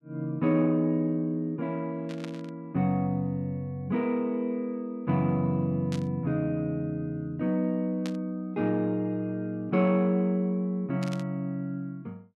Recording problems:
static burst; 4 times, first at 2 s; peak -8 dB vs average level

